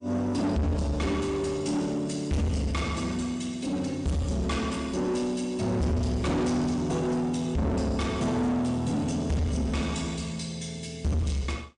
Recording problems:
codec artefacts; MP3, log-spectral distance 3 dB, nothing above 8.7 kHz
distortion; soft clipping, signal-to-distortion ratio 6 dB

